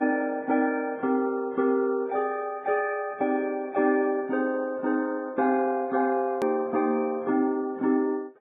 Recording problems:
lossy codec; AAC, then Vorbis, log-spectral distance 2 dB, nothing above 13.1 kHz
edit click; at 6.5 s

